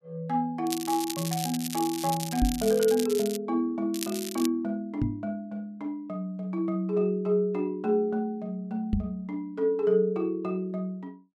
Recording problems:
crackling; from 0.5 to 3.5 s and at 4 s; loose cable, SNR 8 dB
knock on the microphone; at 2.5 s, at 5 s and at 9 s; peak +5 dB vs average level

